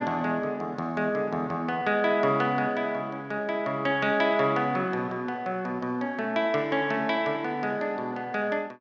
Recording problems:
none

